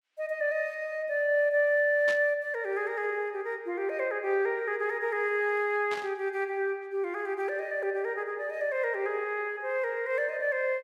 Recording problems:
static burst; at 2 s and at 6 s; peak -5 dB vs average level

